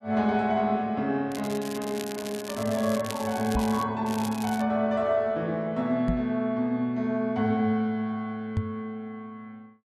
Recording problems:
crackling; from 1.5 to 4 s and at 4 s; loose cable, SNR 13 dB
microphone thump; at 3.5 s, at 6 s and at 8.5 s; peak +3 dB vs average level

